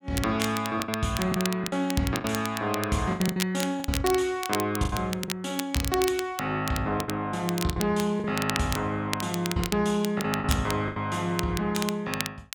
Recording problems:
crackle; vinyl, SNR 8 dB
packet loss; 9% of the sound replaced, filled with the last packet

